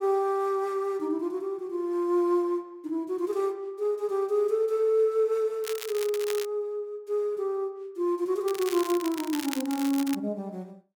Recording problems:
crackling; at 5.5 s and from 8.5 to 10 s; loose cable, SNR 11 dB

